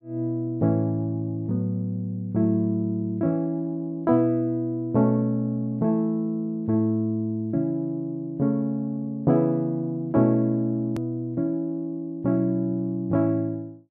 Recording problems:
hard cut with a click; at 11 s

